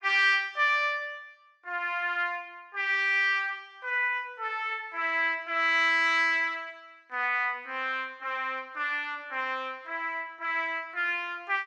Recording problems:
none

